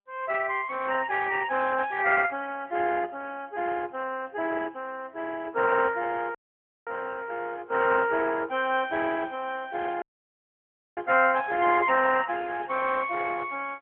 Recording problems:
phone line; 280 Hz to 3.3 kHz, AMR-NB
dropout; at 6.5 s for 0.5 s and at 10 s for 1 s

